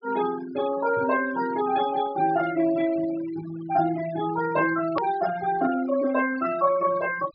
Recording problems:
treble missing; nothing above 5.5 kHz
noise reduction artefacts; signal-to-artefact ratio 14 dB
hard cut with a click; at 5 s

